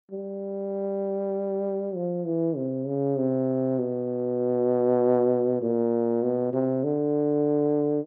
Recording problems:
none

